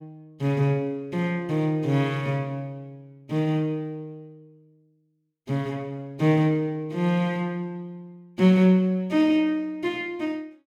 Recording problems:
none

